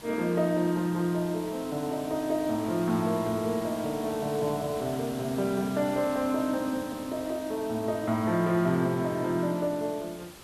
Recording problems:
hiss; slope -3 dB per octave, SNR 16 dB

